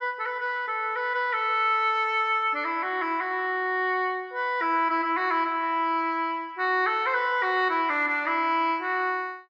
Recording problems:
low-pass filter; nothing above 8 kHz

